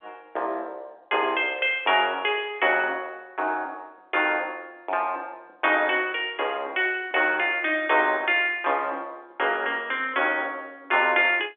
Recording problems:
phone line; 260 Hz to 3.5 kHz, G.711

